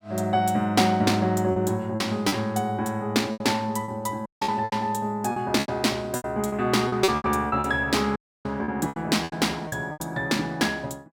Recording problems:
lost packets; 11% of the sound replaced, filled with repeated pitch periods
dropout; at 4.5 s and at 8 s

